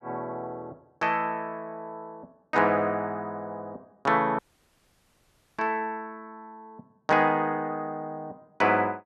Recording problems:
audio cutting out; at 4.5 s for 1 s

